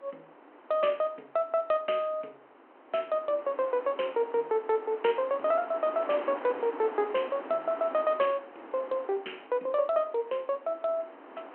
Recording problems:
phone line; 240 Hz to 3.2 kHz, G.726
wind on the microphone; below 1.2 kHz, SNR 15 dB

